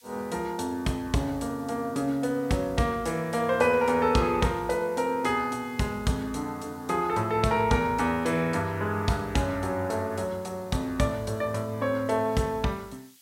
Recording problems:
background hiss; slope +5 dB per octave, SNR 27 dB

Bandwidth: 16 kHz